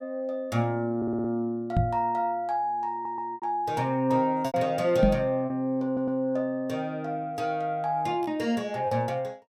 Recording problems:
lost packets; 3% of the sound replaced, filled with repeated pitch periods
audio stuttering; at 1 s, at 3 s and at 6 s
microphone bump; at 2 s and at 5 s; peak +8 dB vs average level

